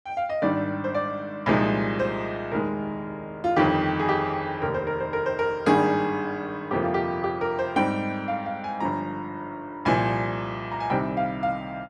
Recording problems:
none

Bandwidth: 13 kHz